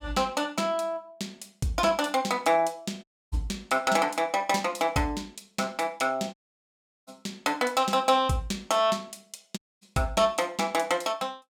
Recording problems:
audio cutting out; at 3 s, at 6.5 s for 0.5 s and at 9.5 s

